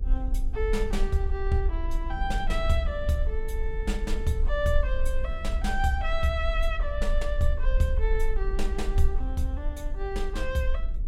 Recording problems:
electrical hum; 50 Hz, harmonics up to 450 Hz, SNR 23 dB
low-frequency rumble; below 44 Hz, strongest tone 22 Hz, SNR 1 dB
wind noise; below 160 Hz, SNR 15 dB

